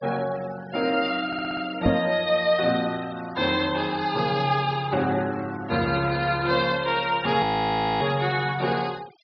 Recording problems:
treble cut off; nothing above 5.5 kHz
denoising artefacts; signal-to-artefact ratio 20 dB
stutter; at 1.5 s
microphone thump; at 2 s; peak +6 dB vs average level
frozen audio; at 7.5 s for 0.5 s

